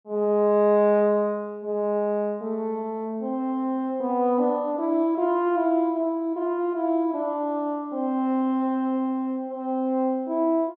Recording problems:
none

